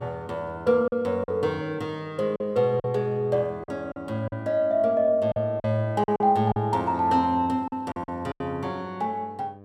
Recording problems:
hum; 50 Hz, harmonics up to 1.2 kHz, SNR 23 dB
packet loss; 7% of the sound replaced, filled with silence

